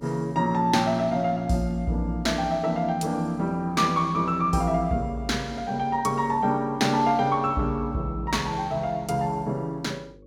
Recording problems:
electrical hum; 50 Hz, harmonics up to 550 Hz, SNR 24 dB

